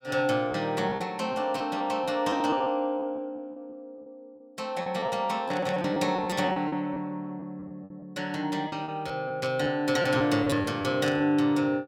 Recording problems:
packet loss; 11% of the sound replaced, filled with repeated pitch periods
static burst; at 5.5 s, at 9.5 s and at 11 s; peak -7 dB vs average level

